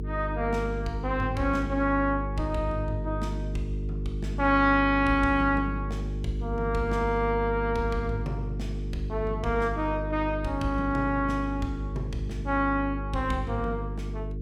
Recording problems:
hum; 50 Hz, harmonics up to 450 Hz, SNR 5 dB

